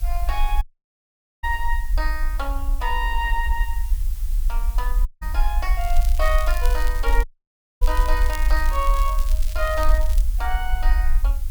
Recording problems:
background hiss; slope +1 dB per octave, SNR 15 dB
rumble; below 48 Hz, SNR -3 dB
dropout; at 0.5 s for 1 s, at 5 s and at 7 s for 0.5 s
microphone thump; at 5 s; peak -11 dB vs average level
crackle; from 6 to 10 s; loose cable, SNR 12 dB

